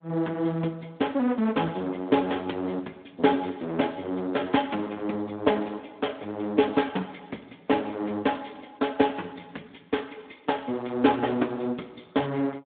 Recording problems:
telephone audio; 190 Hz to 3.6 kHz, Speex

